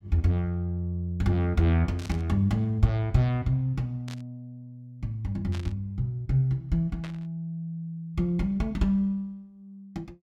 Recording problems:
burst of static; 4 times, first at 2 s; peak -10 dB vs average level

